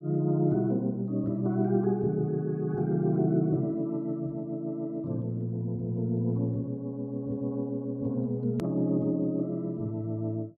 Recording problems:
hard cut with a click; at 8.5 s

